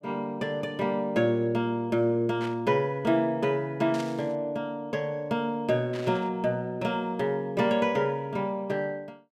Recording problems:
burst of static; at 2.5 s, at 4 s and at 6 s; peak -8 dB vs average level

